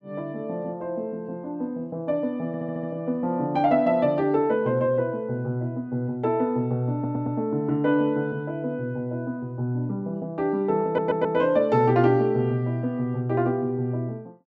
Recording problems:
audio stuttering; at 2.5 s, at 7 s and at 11 s

